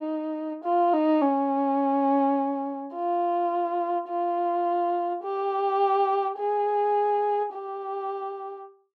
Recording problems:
none

